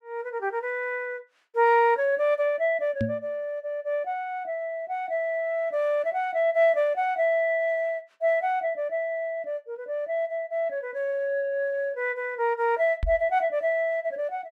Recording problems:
microphone thump; at 3 s and at 13 s; peak +1 dB vs average level

